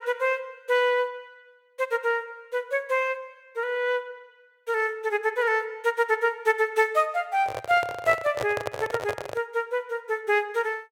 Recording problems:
handling noise; from 7.5 to 9.5 s; peak 0 dB vs average level

